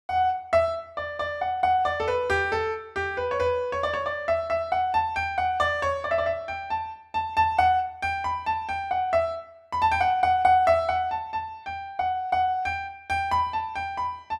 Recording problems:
none

